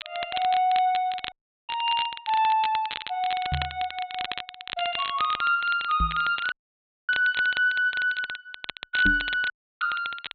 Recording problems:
treble missing; nothing above 4 kHz
crackle; vinyl, SNR 11 dB
dropout; at 1.5 s, at 6.5 s for 0.5 s and at 9.5 s
knock on the microphone; at 3.5 s, at 6 s and at 9 s; peak 0 dB vs average level

